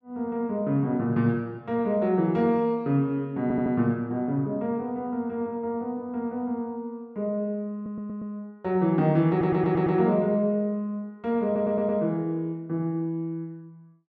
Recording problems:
stutter; 4 times, first at 3.5 s

